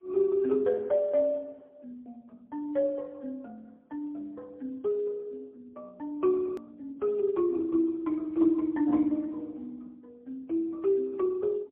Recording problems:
phone line; 220 Hz to 2.4 kHz, AMR-NB, then MP3
hard cut with a click; at 6.5 s

